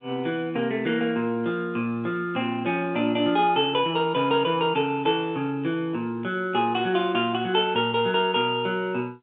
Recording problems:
phone line; 190 Hz to 3.7 kHz, G.711

